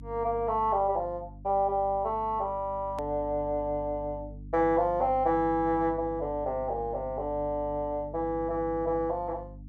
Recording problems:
hum; 50 Hz, harmonics up to 300 Hz, SNR 16 dB
click at an edit; at 3 s

